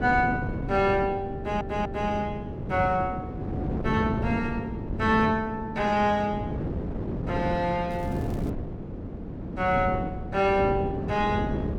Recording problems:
wind noise; below 340 Hz, SNR 5 dB
stutter; at 1.5 s
crackling; at 8 s; loose cable, SNR 27 dB

